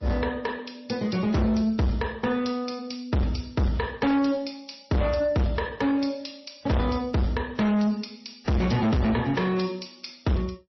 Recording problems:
codec artefacts; MP3, then AAC, log-spectral distance 5 dB, nothing above 5.7 kHz
distorted audio; soft clipping, signal-to-distortion ratio 6 dB

